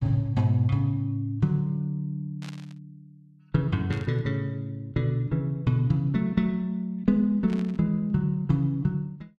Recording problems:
burst of static; at 2.5 s, at 4 s and at 7.5 s; peak -13 dB vs average level

